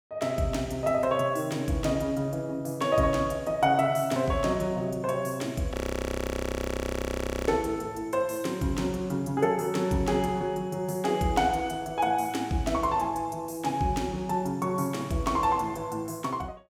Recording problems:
frozen audio; at 5.5 s for 1.5 s

